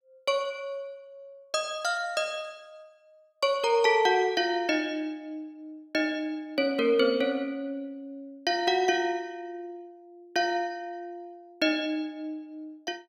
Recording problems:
none

